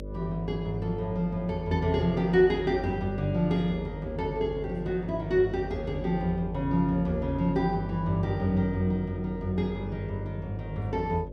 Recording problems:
hum; 50 Hz, harmonics up to 600 Hz, SNR 11 dB

